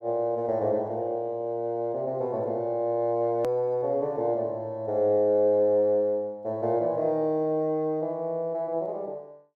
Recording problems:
click at an edit; at 3.5 s

